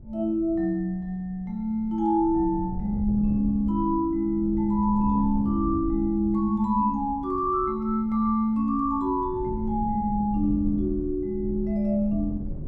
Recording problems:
wind on the microphone; below 140 Hz, SNR 12 dB

